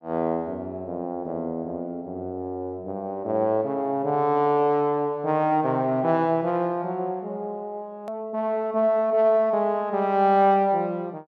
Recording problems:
edit click; at 8 s

